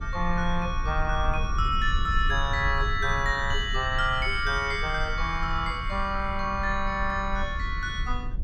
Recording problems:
low-frequency rumble; below 60 Hz, strongest tone 20 Hz, SNR 6 dB

